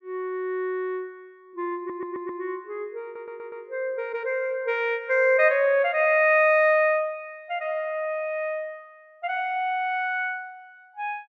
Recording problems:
stutter; at 2 s and at 3 s

